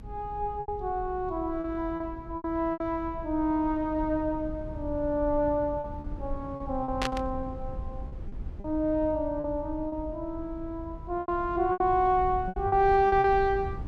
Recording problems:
rumble; below 110 Hz, SNR 12 dB
lost packets; 7% of the sound replaced, filled with repeated pitch periods
burst of static; at 7 s; peak +1 dB vs average level

